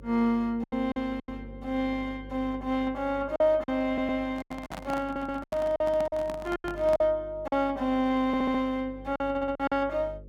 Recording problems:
hum; 50 Hz, harmonics up to 550 Hz, SNR 19 dB
lost packets; 9% of the sound replaced, filled with silence
stutter; 4 times, first at 4 s
handling noise; from 4.5 to 7 s; peak -6 dB vs average level

